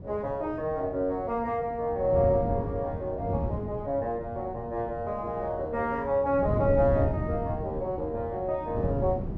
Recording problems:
wind on the microphone; below 220 Hz, SNR 6 dB

